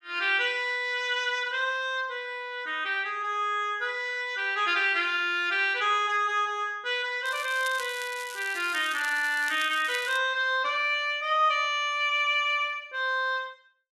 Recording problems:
crackling; from 7.5 to 10 s; loose cable, SNR 15 dB

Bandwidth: 12.5 kHz